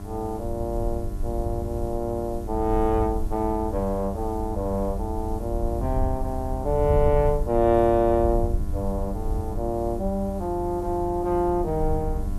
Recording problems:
mains hum; 50 Hz, harmonics up to 1.5 kHz, SNR 13 dB
background hiss; slope +1 dB per octave, SNR 27 dB
low-frequency rumble; below 80 Hz, SNR 6 dB

